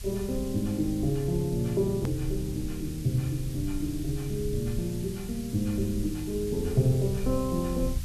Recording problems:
background hiss; slope +2 dB per octave, SNR 16 dB
rumble; below 76 Hz, SNR 10 dB
click at an edit; at 2 s

